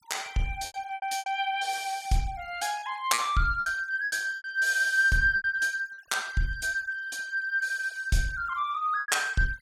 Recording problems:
denoising artefacts; signal-to-artefact ratio 24 dB
lost packets; 8% of the sound replaced, filled with repeated pitch periods

